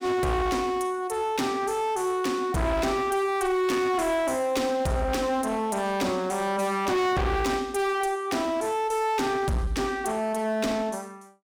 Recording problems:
distortion; hard clipping, signal-to-distortion ratio 7 dB

